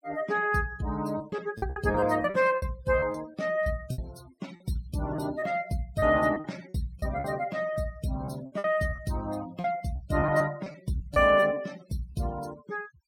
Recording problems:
noise reduction artefacts; signal-to-artefact ratio 20 dB
packet loss; 10% of the sound replaced, filled with repeated pitch periods

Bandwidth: 16.5 kHz